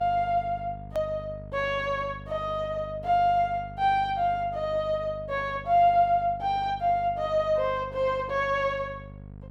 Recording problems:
hum; 50 Hz, harmonics up to 750 Hz, SNR 17 dB
edit click; at 1 s

